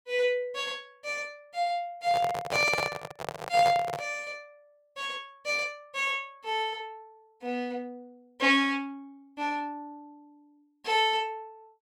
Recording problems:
handling noise; from 2 to 4 s; peak +2 dB vs average level

